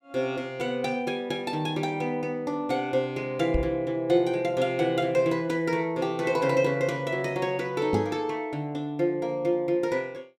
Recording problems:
microphone thump; at 3.5 s and at 8 s; peak +2 dB vs average level

